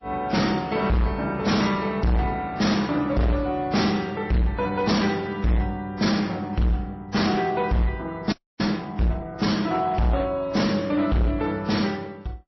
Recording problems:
codec artefacts; MP3, then AAC, log-spectral distance 3 dB, nothing above 5.7 kHz
distorted audio; hard clipping, signal-to-distortion ratio 6 dB
frozen audio; at 8.5 s

